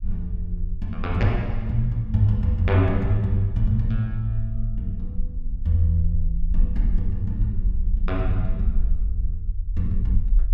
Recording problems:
rumble; below 50 Hz, SNR 4 dB

